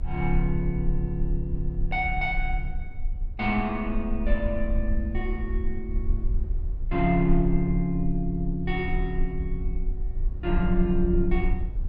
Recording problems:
low-frequency rumble; below 48 Hz, strongest tone 28 Hz, SNR 3 dB

